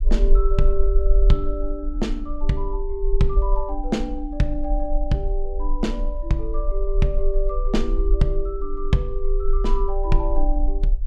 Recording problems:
rumble; below 40 Hz, strongest tone 22 Hz, SNR -1 dB

